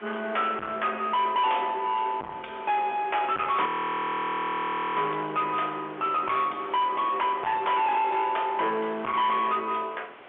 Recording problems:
telephone audio; 320 Hz to 3.5 kHz, G.711
distorted audio; soft clipping, signal-to-distortion ratio 7 dB
background hiss; SNR 21 dB
frozen audio; at 3.5 s for 1.5 s

